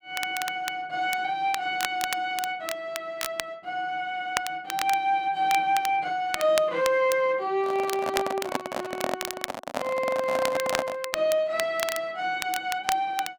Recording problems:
crackle; vinyl, SNR 8 dB
microphone handling noise; from 7.5 to 11 s; peak +4 dB vs average level

